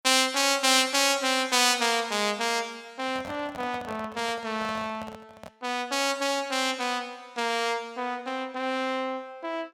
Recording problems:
microphone handling noise; from 3 to 5.5 s; peak -10 dB vs average level

